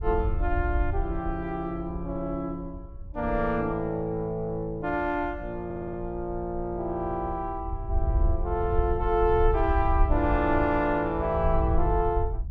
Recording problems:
wind noise; below 70 Hz, SNR 4 dB
stutter; at 5.5 s

